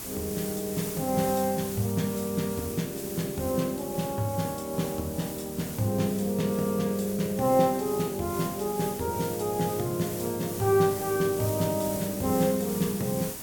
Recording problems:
hiss; SNR 9 dB

